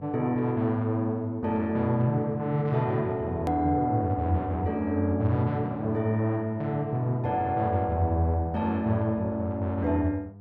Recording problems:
hum; 50 Hz, harmonics up to 900 Hz, SNR 20 dB
click at an edit; at 3.5 s

